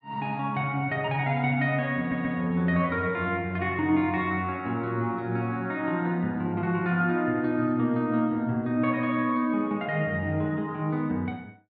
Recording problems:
stutter; at 2 s

